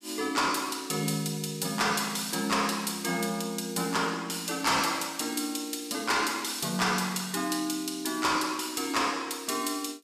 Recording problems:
distortion; hard clipping, signal-to-distortion ratio 12 dB

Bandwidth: 14.5 kHz